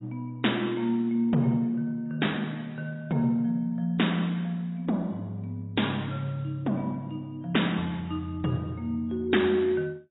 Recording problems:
lossy compression; AAC, log-spectral distance 2 dB, nothing above 3.8 kHz

